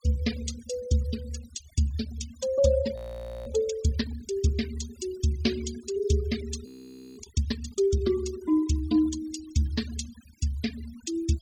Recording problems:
noise reduction artefacts; signal-to-artefact ratio 13 dB
audio freezing; at 3 s for 0.5 s and at 6.5 s for 0.5 s

